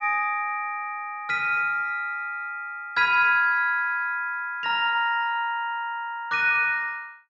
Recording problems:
treble cut off; nothing above 8 kHz

